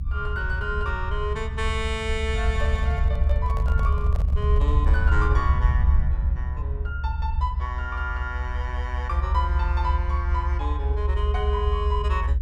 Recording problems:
low-frequency rumble; below 72 Hz, SNR -5 dB
microphone handling noise; from 2.5 to 5 s; peak -5 dB vs average level

